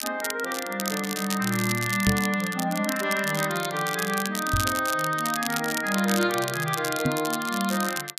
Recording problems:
crackling; vinyl, SNR 6 dB
knock on the microphone; at 2 s, at 4.5 s and at 7 s; peak +4 dB vs average level

